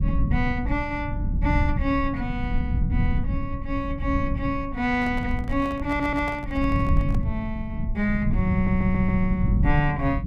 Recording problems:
low-frequency rumble; below 130 Hz, SNR 1 dB
microphone handling noise; from 5 to 7.5 s; peak -6 dB vs average level
audio stuttering; at 6 s and at 8.5 s

